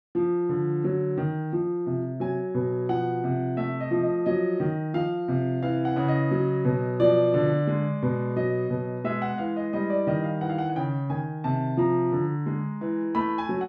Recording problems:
none

